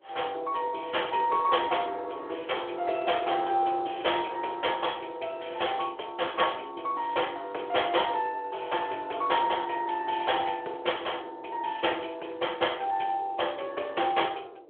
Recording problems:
telephone audio; 300 Hz to 3.4 kHz, Speex
wind noise; below 580 Hz, SNR 19 dB

